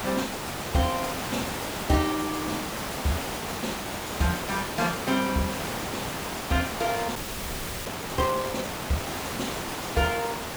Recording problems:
hiss; slope -4 dB per octave, SNR 2 dB
audio freezing; at 7 s for 0.5 s

